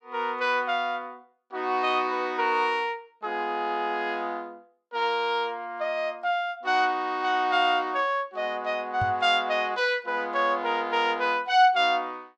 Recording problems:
microphone thump; at 9 s; peak -3 dB vs average level

